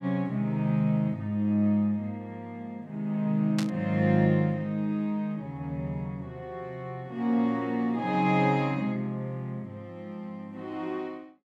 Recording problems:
burst of static; at 3.5 s; peak -2 dB vs average level

